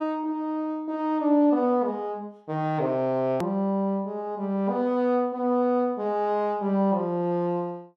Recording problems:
click at an edit; at 3.5 s

